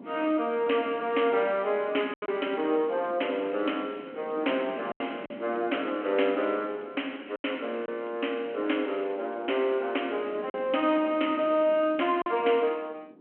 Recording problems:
phone line; 240 Hz to 3.2 kHz, G.726
wind noise; below 430 Hz, SNR 18 dB
lost packets; 3% of the sound replaced, filled with silence

